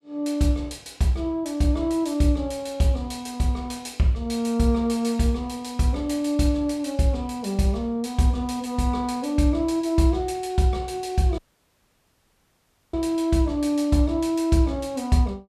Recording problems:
dropout; at 11 s for 1.5 s

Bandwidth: 14.5 kHz